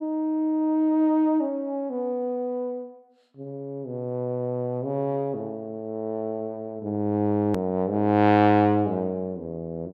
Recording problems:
hard cut with a click; at 7.5 s

